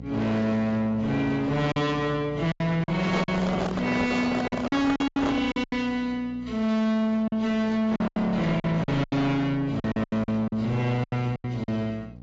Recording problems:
lossy codec; AAC, then AAC, log-spectral distance 2 dB
distorted audio; soft clipping, signal-to-distortion ratio 7 dB
hum; 60 Hz, harmonics up to 840 Hz, SNR 18 dB
packet loss; 11% of the sound replaced, filled with silence
handling noise; from 3 to 5.5 s; peak +3 dB vs average level

